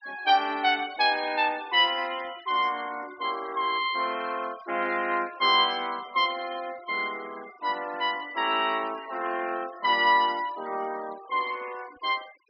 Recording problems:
treble missing; nothing above 5.5 kHz
noise reduction artefacts; signal-to-artefact ratio 20 dB

